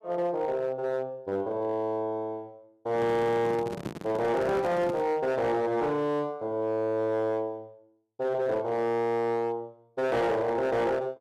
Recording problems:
distorted audio; hard clipping, signal-to-distortion ratio 11 dB
handling noise; from 3 to 5 s; peak -2 dB vs average level

